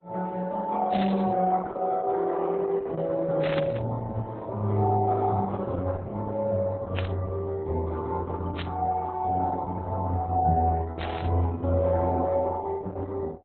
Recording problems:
lossy codec; Vorbis, then Opus, log-spectral distance 3 dB, nothing above 3.9 kHz
burst of static; 5 times, first at 1 s; peak -3 dB vs average level

